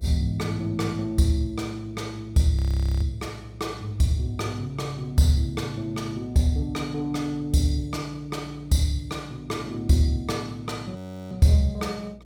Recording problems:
electrical hum; 60 Hz, harmonics up to 660 Hz, SNR 22 dB
frozen audio; at 2.5 s and at 11 s

